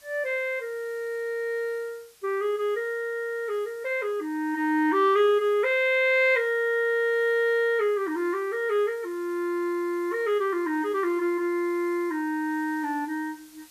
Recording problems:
background hiss; slope +1 dB per octave, SNR 28 dB

